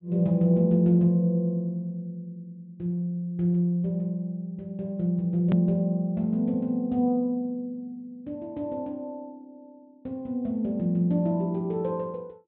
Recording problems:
treble missing; nothing above 4 kHz
click at an edit; at 5.5 s

